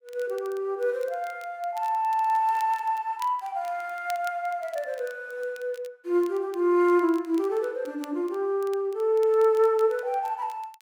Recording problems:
crackling; vinyl, SNR 26 dB

